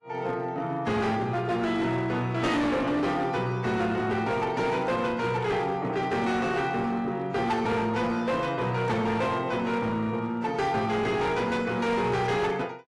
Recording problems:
lossy codec; AAC, log-spectral distance 2 dB, nothing above 11.3 kHz
distorted audio; hard clipping, signal-to-distortion ratio 10 dB

